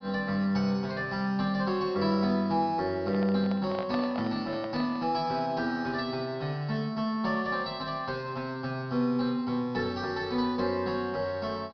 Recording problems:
treble cut off; nothing above 5.5 kHz
microphone handling noise; from 3 to 5 s; peak -2 dB vs average level

